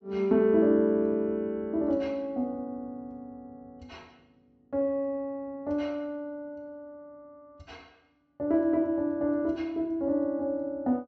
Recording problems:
treble cut off; nothing above 8 kHz

